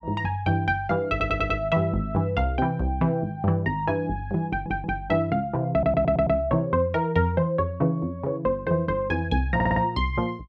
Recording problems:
stutter; 4 times, first at 1 s

